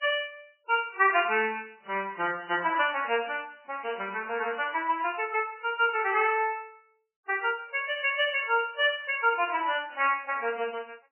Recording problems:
codec artefacts; AAC, then MP3, log-spectral distance 6 dB, nothing above 2.9 kHz

